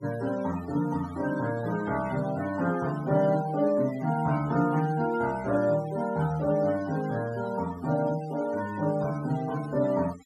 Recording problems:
denoising artefacts; signal-to-artefact ratio 17 dB

